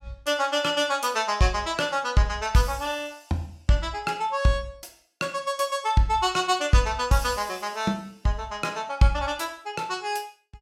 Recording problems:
none

